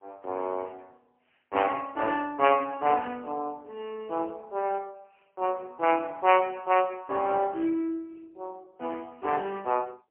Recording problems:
telephone audio; 280 Hz to 3 kHz, AMR-NB, then MP3

